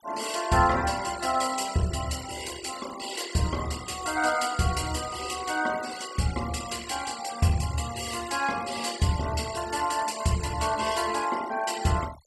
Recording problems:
noise reduction artefacts; signal-to-artefact ratio 13 dB

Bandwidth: 14.5 kHz